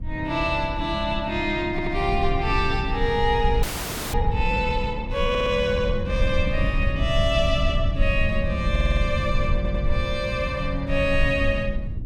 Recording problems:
low-frequency rumble; below 82 Hz, SNR 4 dB
audio stuttering; 4 times, first at 1.5 s
frozen audio; at 3.5 s for 0.5 s

